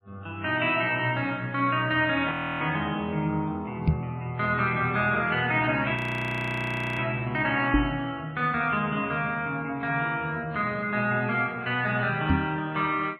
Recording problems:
codec artefacts; MP3, log-spectral distance 2 dB, nothing above 13.1 kHz
audio freezing; at 2.5 s and at 6 s for 1 s
microphone bump; at 4 s, at 7.5 s and at 12 s; peak +7 dB vs average level

